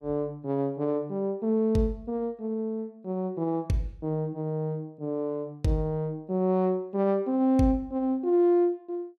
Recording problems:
none

